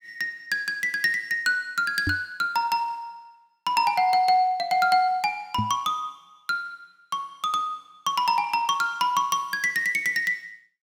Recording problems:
microphone thump; at 2 s and at 5.5 s; peak 0 dB vs average level

